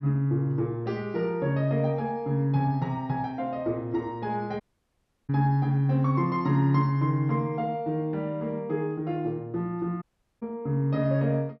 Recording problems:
low-pass filter; nothing above 5.8 kHz
audio cutting out; at 4.5 s for 0.5 s and at 10 s

